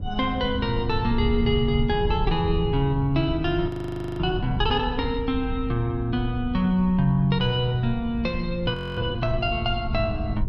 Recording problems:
low-frequency rumble; below 110 Hz, SNR 7 dB
frozen audio; at 3.5 s for 0.5 s and at 8.5 s

